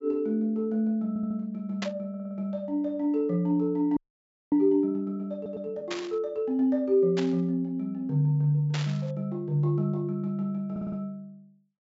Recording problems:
treble missing; nothing above 8 kHz
audio stuttering; 4 times, first at 1 s
static burst; 4 times, first at 2 s; peak -2 dB vs average level
audio freezing; at 4 s for 0.5 s

